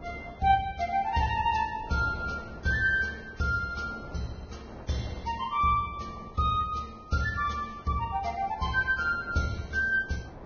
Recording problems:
lossy codec; Vorbis, log-spectral distance 3 dB, nothing above 6.3 kHz
wind on the microphone; below 680 Hz, SNR 18 dB

